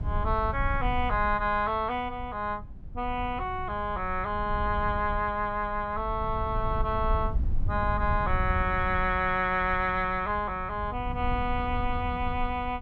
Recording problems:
rumble; below 84 Hz, SNR 7 dB

